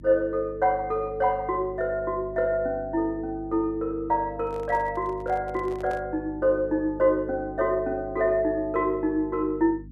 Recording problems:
hum; 50 Hz, harmonics up to 300 Hz, SNR 17 dB
handling noise; from 4.5 to 6 s; peak -10 dB vs average level

